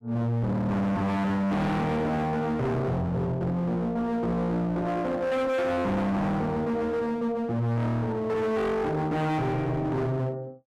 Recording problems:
distorted audio; hard clipping, uneven, signal-to-distortion ratio 5 dB

